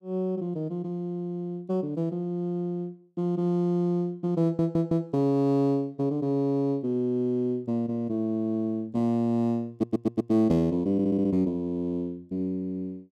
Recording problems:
audio stuttering; at 4.5 s, at 9.5 s and at 11 s

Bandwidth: 13 kHz